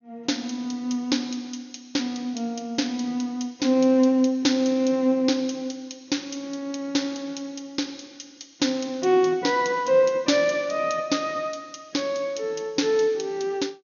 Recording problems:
treble cut off; nothing above 6.8 kHz

